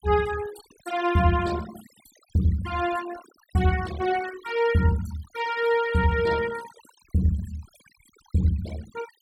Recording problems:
denoising artefacts; signal-to-artefact ratio 16 dB

